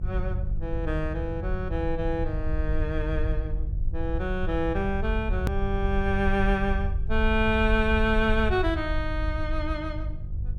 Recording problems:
electrical hum; 50 Hz, harmonics up to 550 Hz, SNR 10 dB
low-frequency rumble; below 68 Hz, SNR 3 dB
hard cut with a click; at 5.5 s

